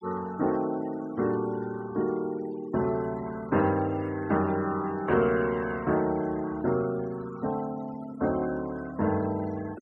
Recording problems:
noise reduction artefacts; signal-to-artefact ratio 21 dB

